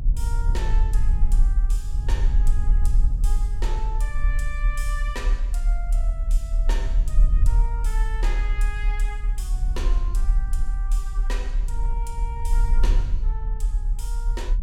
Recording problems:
low-frequency rumble; below 42 Hz, strongest tone 34 Hz, SNR -13 dB

